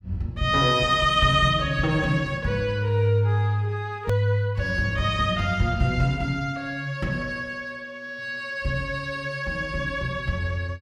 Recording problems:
edit click; at 4 s

